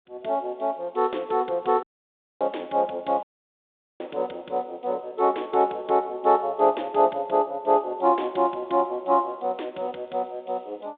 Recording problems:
phone line; 260 Hz to 3.7 kHz, G.726
dropout; at 2 s for 0.5 s and at 3 s for 1 s

